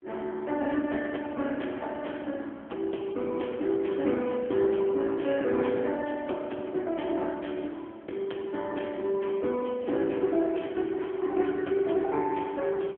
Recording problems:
phone line; 240 Hz to 3.4 kHz, AMR-NB

